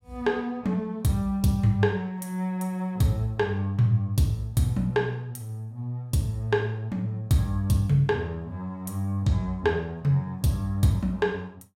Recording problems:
none

